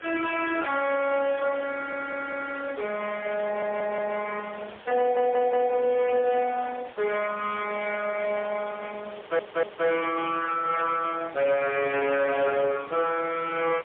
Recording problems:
phone line; 260 Hz to 3.4 kHz, AMR-NB, then MP3
distortion; soft clipping, signal-to-distortion ratio 6 dB
background hiss; SNR 6 dB
stutter; 4 times, first at 1.5 s

